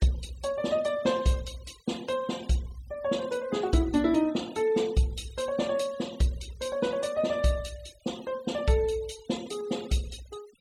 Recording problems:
noise reduction artefacts; signal-to-artefact ratio 19 dB

